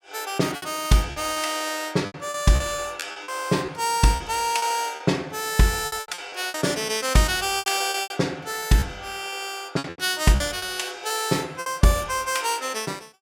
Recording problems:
lost packets; 11% of the sound replaced, filled with repeated pitch periods

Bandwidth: 17 kHz